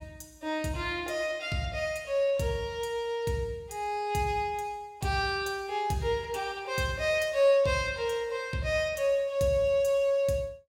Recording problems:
none

